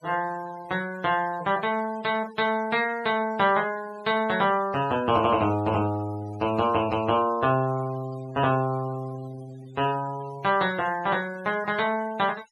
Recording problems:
noise reduction artefacts; signal-to-artefact ratio 19 dB

